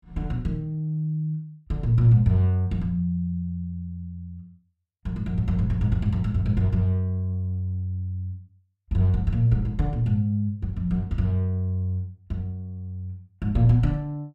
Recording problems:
none

